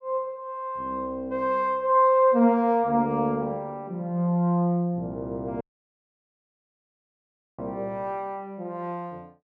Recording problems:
dropout; at 5.5 s for 2 s

